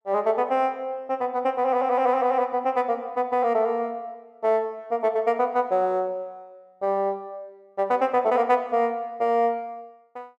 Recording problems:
none

